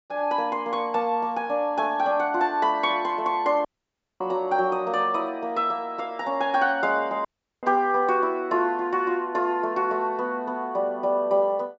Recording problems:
treble missing; nothing above 7.5 kHz
audio cutting out; at 3.5 s for 0.5 s and at 7.5 s

